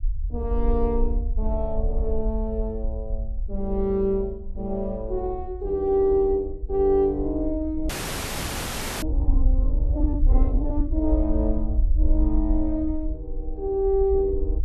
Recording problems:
rumble; below 56 Hz, SNR 2 dB
frozen audio; at 8 s for 1 s

